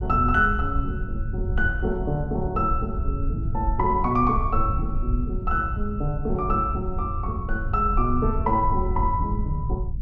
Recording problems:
rumble; below 78 Hz, SNR 4 dB

